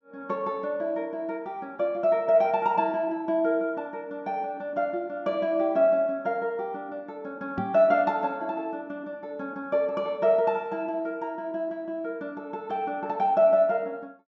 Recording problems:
treble cut off; nothing above 8 kHz
microphone thump; at 7.5 s; peak -1 dB vs average level

